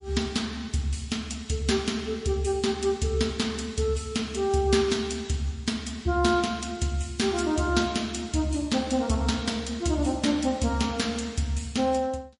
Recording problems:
lossy codec; MP3, log-spectral distance 3 dB, nothing above 10.4 kHz

